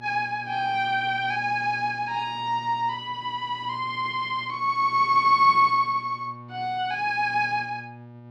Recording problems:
hum; 60 Hz, harmonics up to 1.2 kHz, SNR 21 dB

